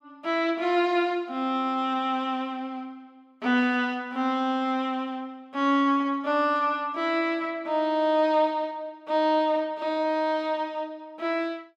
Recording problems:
none

